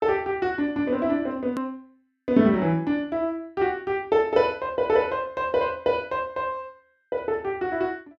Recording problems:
edit click; at 1.5 s

